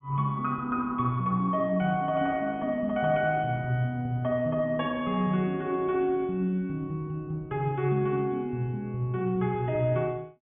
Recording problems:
treble cut off; nothing above 3.5 kHz

